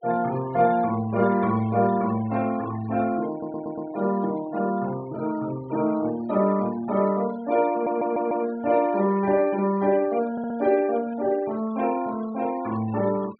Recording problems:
treble missing; nothing above 4.5 kHz
noise reduction artefacts; signal-to-artefact ratio 20 dB
audio stuttering; at 3.5 s, at 7.5 s and at 10 s

